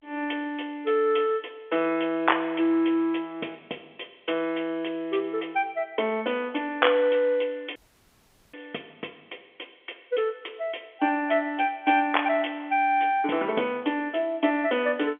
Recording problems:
telephone audio; 240 Hz to 3.4 kHz, G.711
dropout; at 8 s for 1 s

